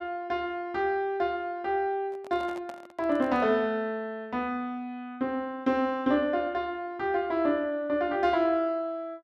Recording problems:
microphone handling noise; from 2 to 3.5 s; peak -11 dB vs average level

